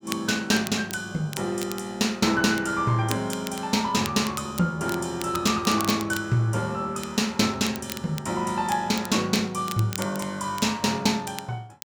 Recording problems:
crackling; vinyl, SNR 14 dB

